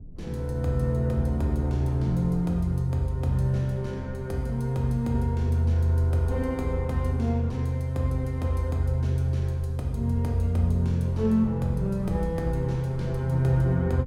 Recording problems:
rumble; below 110 Hz, SNR 18 dB

